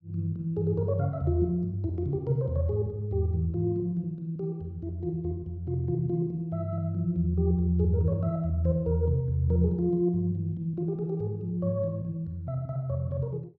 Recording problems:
none

